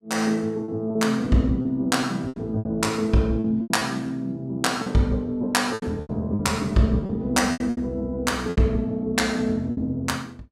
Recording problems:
packet loss; 10% of the sound replaced, filled with repeated pitch periods

